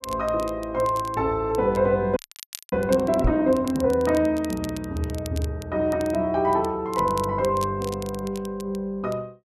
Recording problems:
crackle; vinyl, SNR 19 dB
frozen audio; at 2 s for 0.5 s
knock on the microphone; at 3 s; peak +4 dB vs average level

